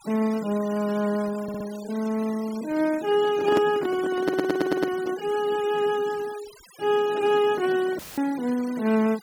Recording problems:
noise reduction artefacts; signal-to-artefact ratio 18 dB
stutter; at 1.5 s and at 4 s
microphone handling noise; from 3 to 5 s; peak +4 dB vs average level
audio cutting out; at 8 s; filled with static

